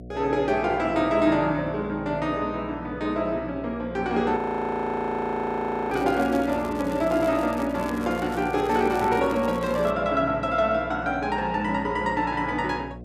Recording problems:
hum; 60 Hz, harmonics up to 720 Hz, SNR 16 dB
frozen audio; at 4.5 s for 1.5 s
crackle; from 6 to 10 s; loose cable, SNR 21 dB

